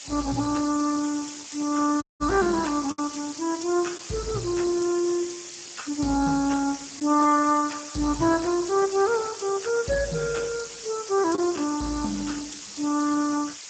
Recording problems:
codec artefacts; Speex, log-spectral distance 18 dB, nothing above 7.8 kHz
hiss; slope +3 dB per octave, SNR 12 dB
lost packets; 1.3% of the sound replaced, filled with the last packet
audio cutting out; at 2 s

